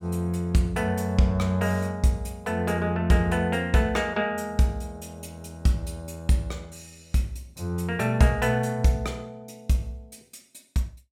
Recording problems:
none

